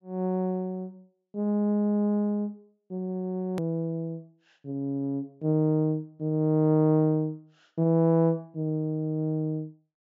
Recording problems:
treble missing; nothing above 8 kHz
click at an edit; at 3.5 s

